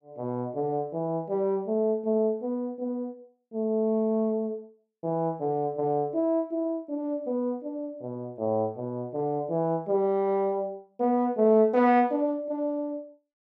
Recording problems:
none

